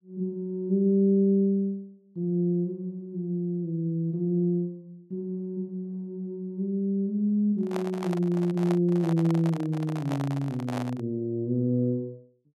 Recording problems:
microphone handling noise; from 7.5 to 11 s; peak -4 dB vs average level

